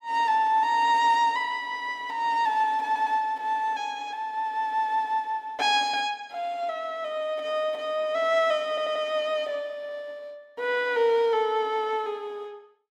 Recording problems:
audio stuttering; at 3 s and at 8.5 s

